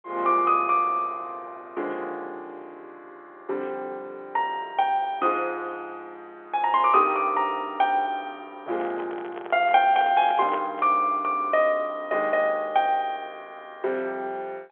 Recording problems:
phone line; 300 Hz to 3.5 kHz, G.711
handling noise; from 8.5 to 11 s; peak -5 dB vs average level

